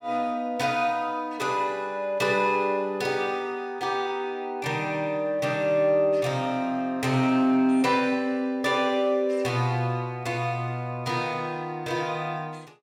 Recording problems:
none

